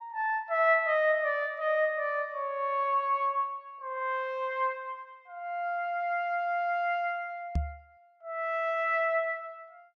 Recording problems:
microphone bump; at 7.5 s; peak +3 dB vs average level

